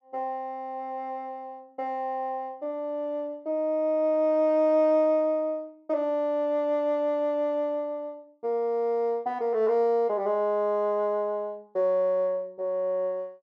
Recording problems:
none

